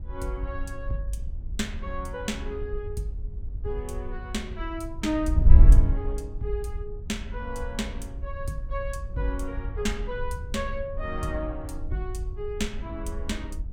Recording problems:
wind on the microphone; below 62 Hz, SNR -3 dB

